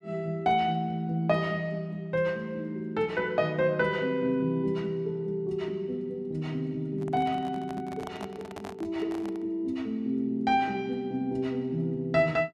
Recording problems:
handling noise; from 7 to 9.5 s; peak -6 dB vs average level

